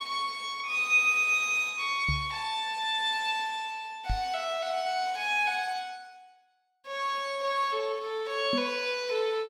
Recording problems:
knock on the microphone; at 2 s, at 4 s and at 8.5 s; peak 0 dB vs average level

